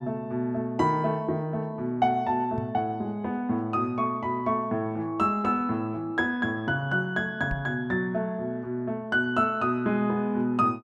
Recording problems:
microphone thump; at 2.5 s and at 7.5 s; peak -3 dB vs average level

